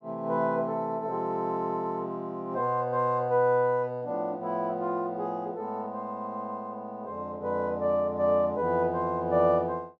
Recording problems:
none

